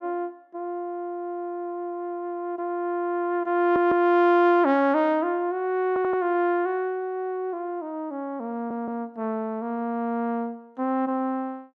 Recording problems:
audio stuttering; at 3.5 s, at 6 s and at 8.5 s

